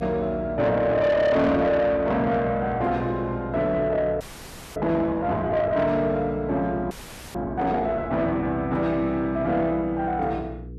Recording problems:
distorted audio; soft clipping, signal-to-distortion ratio 11 dB
hum; 60 Hz, harmonics up to 480 Hz, SNR 16 dB
frozen audio; at 4 s for 0.5 s and at 7 s

